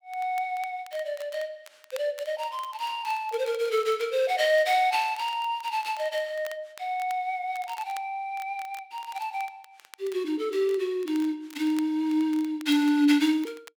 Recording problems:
crackling; vinyl, SNR 23 dB

